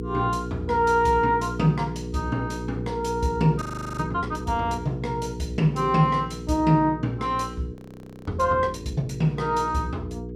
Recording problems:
electrical hum; 60 Hz, harmonics up to 480 Hz, SNR 10 dB
frozen audio; at 3.5 s and at 8 s for 0.5 s

